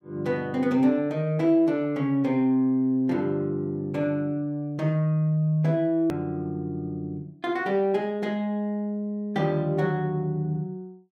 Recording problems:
click at an edit; at 6 s

